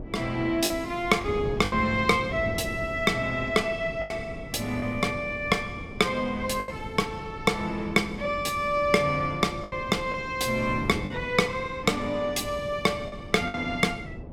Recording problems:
wind noise; below 330 Hz, SNR 12 dB
packet loss; 4% of the sound replaced, filled with the last packet

